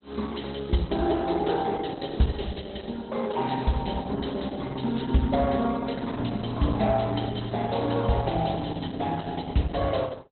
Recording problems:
codec artefacts; Opus, log-spectral distance 7 dB, nothing above 4.1 kHz

